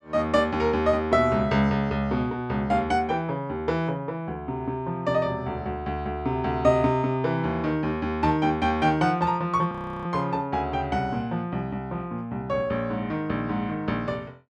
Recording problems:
frozen audio; at 9.5 s

